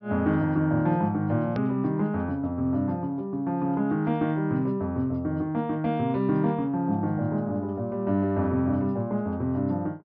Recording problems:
treble missing; nothing above 5.8 kHz
edit click; at 1.5 s

